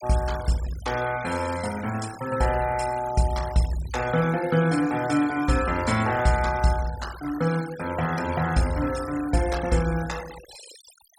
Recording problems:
noise reduction artefacts; signal-to-artefact ratio 15 dB

